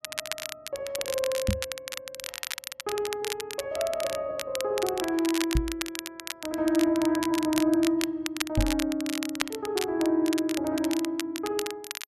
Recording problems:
crackle; vinyl, SNR 7 dB
knock on the microphone; at 1.5 s, at 5.5 s and at 8.5 s; peak +6 dB vs average level

